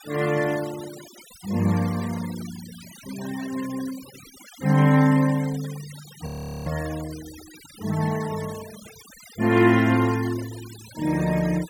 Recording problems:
denoising artefacts; signal-to-artefact ratio 18 dB
audio freezing; at 6.5 s

